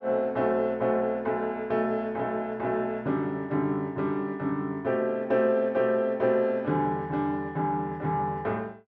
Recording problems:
none

